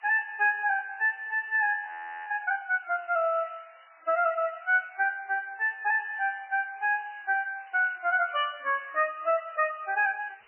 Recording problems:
lossy compression; MP3, log-spectral distance 10 dB, nothing above 2.5 kHz
background hiss; SNR 28 dB
audio freezing; at 2 s

